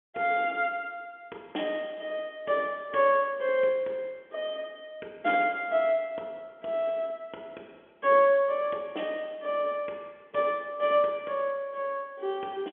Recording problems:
telephone audio; 260 Hz to 3.5 kHz, G.711

